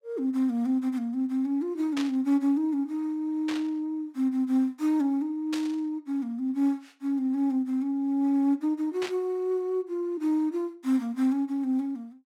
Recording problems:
static burst; 4 times, first at 2 s; peak -4 dB vs average level

